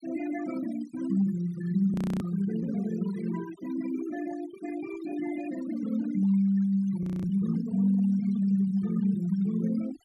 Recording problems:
noise reduction artefacts; signal-to-artefact ratio 16 dB
frozen audio; at 2 s and at 7 s

